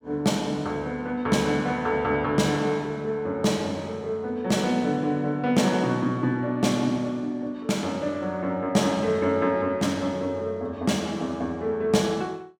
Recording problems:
none

